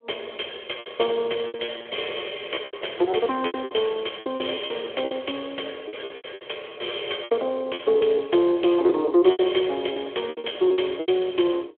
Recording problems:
phone line; 300 Hz to 3.3 kHz, Speex
lost packets; 15% of the sound replaced, filled with repeated pitch periods

